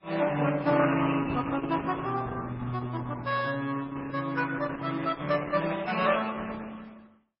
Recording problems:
lossy codec; Opus, then MP3, log-spectral distance 4 dB, nothing above 5.2 kHz

